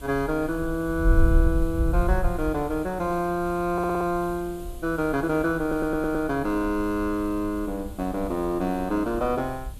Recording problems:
background hiss; SNR 21 dB
wind on the microphone; below 66 Hz, SNR 5 dB
audio stuttering; at 3.5 s and at 5.5 s

